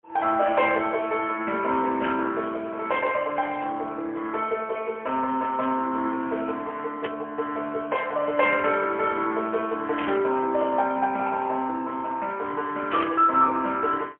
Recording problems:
telephone audio; 260 Hz to 3.2 kHz, AMR-NB, then MP3
static burst; 4 times, first at 2 s; peak -1 dB vs average level

